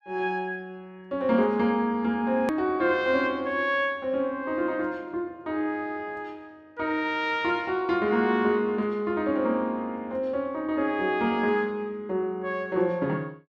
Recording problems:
edit click; at 2.5 s

